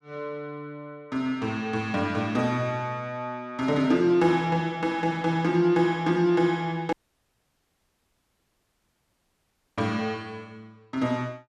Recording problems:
audio cutting out; at 7 s for 3 s

